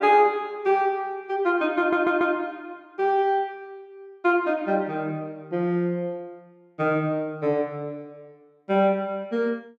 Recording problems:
stutter; at 2 s

